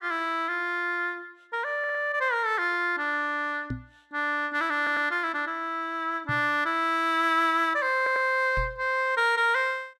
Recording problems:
audio stuttering; at 2 s, at 5 s and at 8 s
microphone bump; at 3.5 s, at 6.5 s and at 8.5 s; peak -3 dB vs average level

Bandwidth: 14 kHz